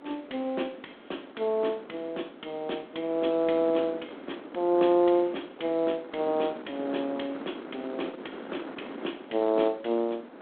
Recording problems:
phone line; 240 Hz to 3.6 kHz, G.726
wind on the microphone; below 790 Hz, SNR 14 dB

